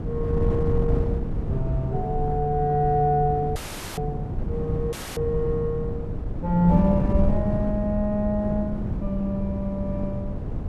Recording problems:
wind on the microphone; below 180 Hz, SNR 3 dB
dropout; at 3.5 s and at 5 s

